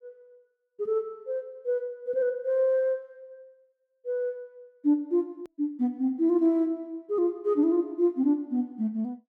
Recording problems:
click at an edit; at 5.5 s

